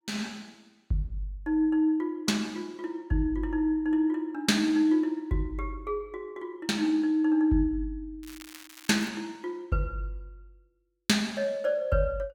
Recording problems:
crackle; at 8 s; loose cable, SNR 19 dB

